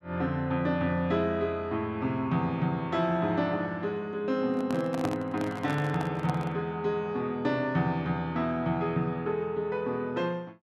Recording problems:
microphone handling noise; from 4.5 to 6.5 s; peak -1 dB vs average level

